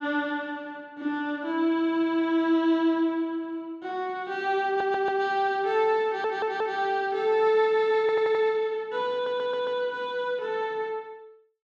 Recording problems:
stutter; 4 times, first at 4.5 s

